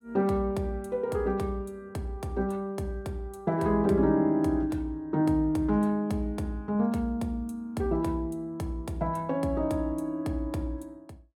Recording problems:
none

